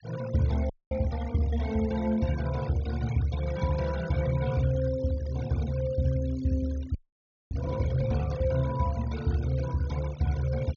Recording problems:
treble cut off; nothing above 6.7 kHz
denoising artefacts; signal-to-artefact ratio 17 dB
audio freezing; at 0.5 s and at 7 s for 0.5 s

